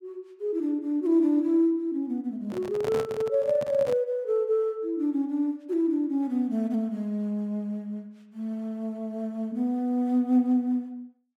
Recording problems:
handling noise; from 2.5 to 4 s; peak -3 dB vs average level

